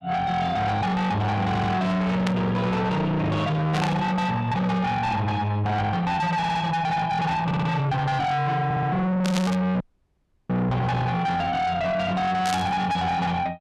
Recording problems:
distortion; soft clipping, signal-to-distortion ratio 6 dB
stutter; 4 times, first at 1.5 s
burst of static; 4 times, first at 2.5 s; peak -1 dB vs average level
dropout; at 10 s for 0.5 s

